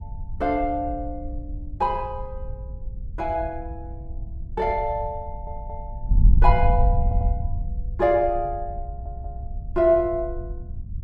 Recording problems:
wind on the microphone; below 70 Hz, SNR 4 dB
audio stuttering; at 5.5 s, at 7 s and at 9 s

